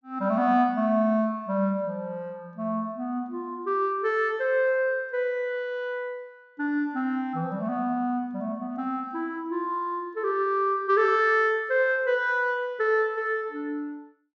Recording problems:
treble missing; nothing above 7.1 kHz

